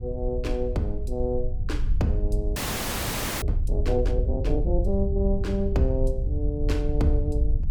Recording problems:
rumble; below 70 Hz, SNR -1 dB
audio freezing; at 2.5 s for 1 s

